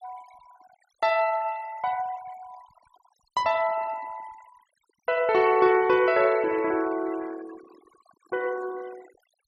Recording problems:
denoising artefacts; signal-to-artefact ratio 20 dB

